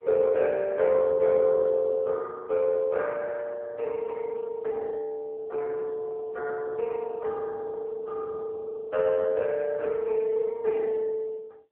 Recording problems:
telephone audio; 320 Hz to 2.2 kHz, AMR-NB

